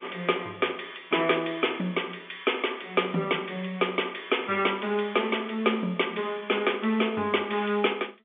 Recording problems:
phone line; 190 Hz to 3.5 kHz, G.711

